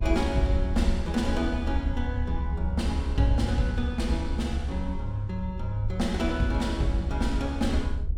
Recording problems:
rumble; below 72 Hz, SNR 3 dB

